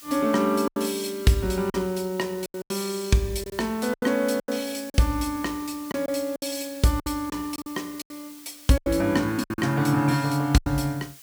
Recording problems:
hiss; slope +3 dB per octave, SNR 19 dB
lost packets; 10% of the sound replaced, filled with silence

